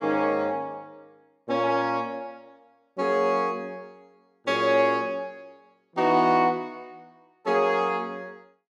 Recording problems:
none

